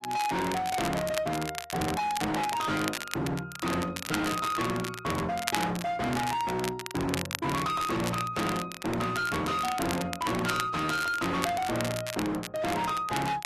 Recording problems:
lossy codec; AAC, log-spectral distance 2 dB, nothing above 13.1 kHz
distortion; hard clipping, signal-to-distortion ratio 6 dB
crackle; vinyl, SNR 8 dB

